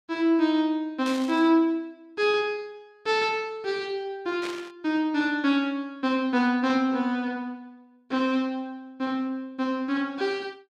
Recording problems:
burst of static; at 1 s and at 4.5 s; peak -6 dB vs average level

